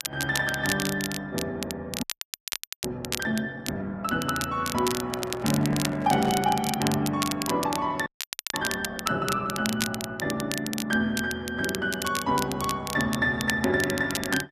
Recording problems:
lossy compression; Opus, log-spectral distance 2 dB
crackling; vinyl, SNR 6 dB
audio freezing; at 2 s for 1 s and at 8 s
microphone handling noise; from 5 to 6.5 s; peak -3 dB vs average level

